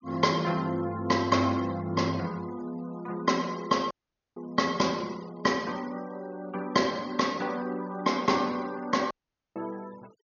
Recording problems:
treble missing; nothing above 6.7 kHz
noise reduction artefacts; signal-to-artefact ratio 23 dB
dropout; at 4 s and at 9 s

